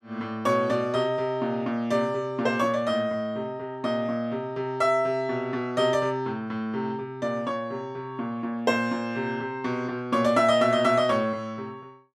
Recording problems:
none

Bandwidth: 13.5 kHz